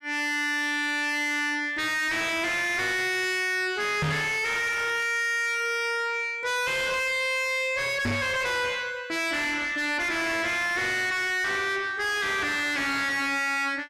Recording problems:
distorted audio; soft clipping, signal-to-distortion ratio 5 dB
microphone bump; at 4 s and at 8 s; peak +5 dB vs average level
crackling; at 4.5 s; loose cable, SNR 22 dB

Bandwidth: 14 kHz